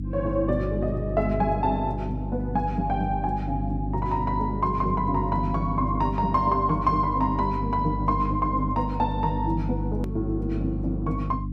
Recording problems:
hum; 50 Hz, harmonics up to 300 Hz, SNR 4 dB
click at an edit; at 10 s

